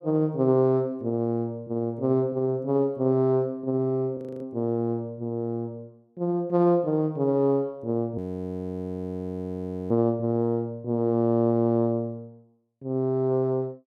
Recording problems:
audio freezing; at 4 s and at 8 s for 1.5 s

